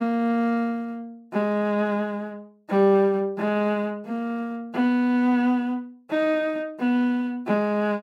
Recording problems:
none

